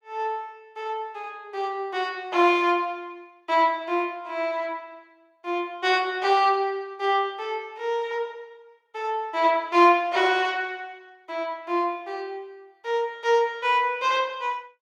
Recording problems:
none

